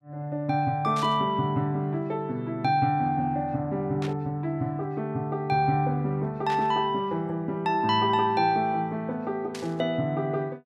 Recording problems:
static burst; 4 times, first at 1 s; peak -8 dB vs average level

